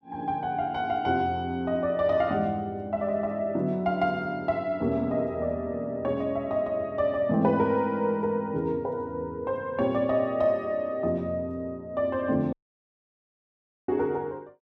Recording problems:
audio cutting out; at 13 s for 1.5 s

